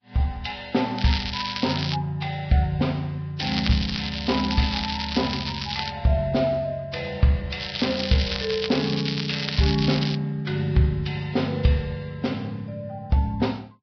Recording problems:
codec artefacts; Vorbis, log-spectral distance 9 dB, nothing above 5.3 kHz
crackle; at 1 s, from 3.5 to 6 s and from 7.5 to 10 s; loose cable, SNR 5 dB

